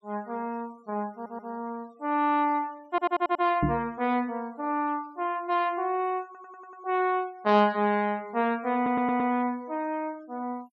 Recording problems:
noise reduction artefacts; signal-to-artefact ratio 27 dB
audio stuttering; 4 times, first at 1 s
microphone bump; at 3.5 s; peak +5 dB vs average level

